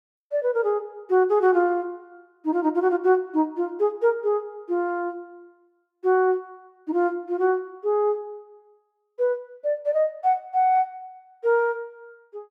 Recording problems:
none

